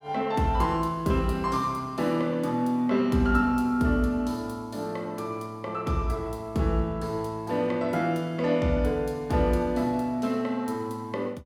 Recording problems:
none

